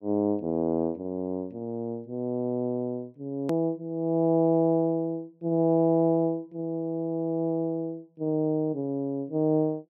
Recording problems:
edit click; at 3.5 s

